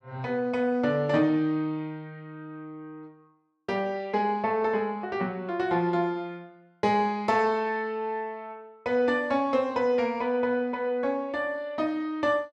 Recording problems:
none

